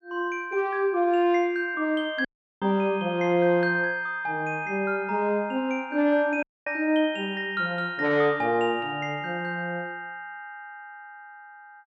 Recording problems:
dropout; at 2.5 s and at 6.5 s

